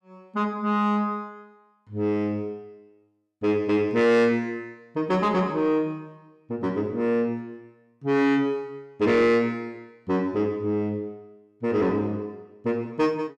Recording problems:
distortion; soft clipping, signal-to-distortion ratio 12 dB

